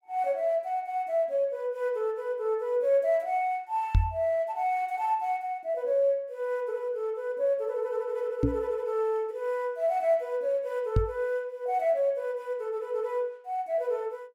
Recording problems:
knock on the microphone; at 4 s, at 8.5 s and at 11 s; peak +8 dB vs average level

